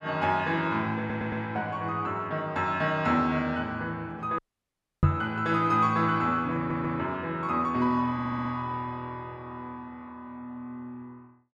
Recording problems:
audio stuttering; at 1 s, at 6.5 s and at 8 s
audio cutting out; at 4.5 s for 0.5 s
microphone thump; at 5 s; peak +9 dB vs average level

